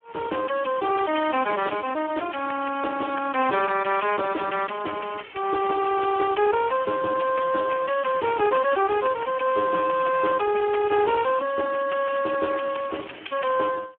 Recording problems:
telephone audio; 240 Hz to 2.2 kHz, Speex

